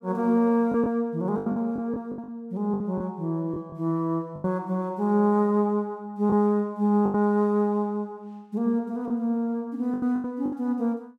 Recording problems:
lost packets; 8% of the sound replaced, filled with the last packet

